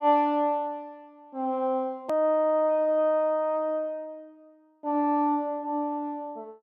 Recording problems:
edit click; at 2 s

